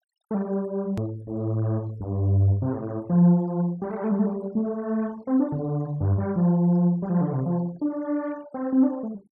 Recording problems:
denoising artefacts; signal-to-artefact ratio 26 dB
click at an edit; at 1 s

